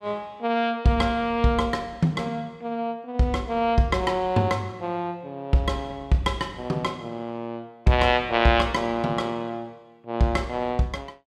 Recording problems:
none

